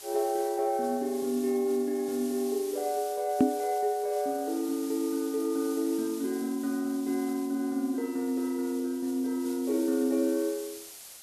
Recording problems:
background hiss; slope +1 dB per octave, SNR 15 dB
microphone thump; at 3.5 s; peak +9 dB vs average level

